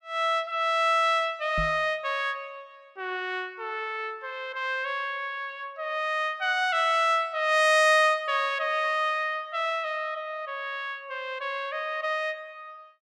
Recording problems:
microphone bump; at 1.5 s; peak -3 dB vs average level

